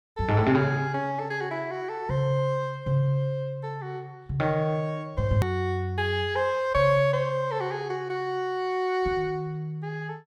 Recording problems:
hard cut with a click; at 5.5 s

